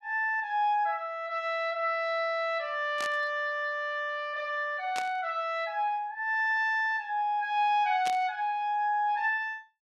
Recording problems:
burst of static; at 3 s, at 5 s and at 8 s; peak -4 dB vs average level

